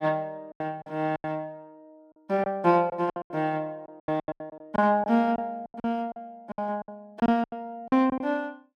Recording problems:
lost packets; 15% of the sound replaced, filled with silence

